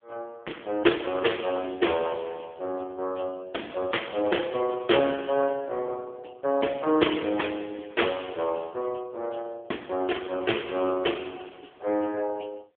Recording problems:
telephone audio; 260 Hz to 3.5 kHz, AMR-NB

